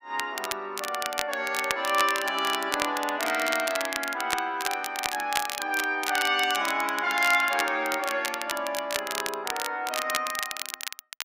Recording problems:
crackling; vinyl, SNR 6 dB

